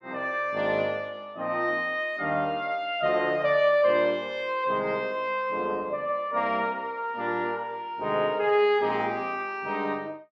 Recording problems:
none

